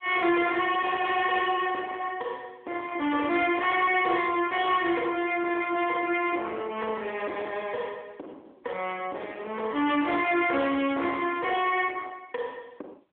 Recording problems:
phone line; 260 Hz to 3.4 kHz, AMR-NB
distorted audio; soft clipping, signal-to-distortion ratio 11 dB

